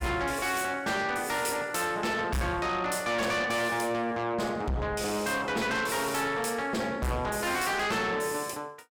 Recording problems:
distortion; soft clipping, signal-to-distortion ratio 6 dB

